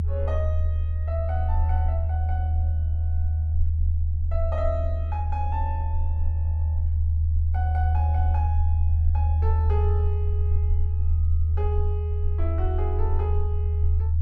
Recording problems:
low-frequency rumble; below 80 Hz, strongest tone 78 Hz, SNR -10 dB

